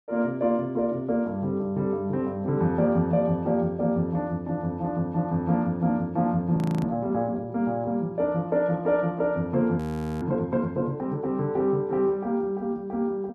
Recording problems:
audio freezing; at 6.5 s and at 10 s

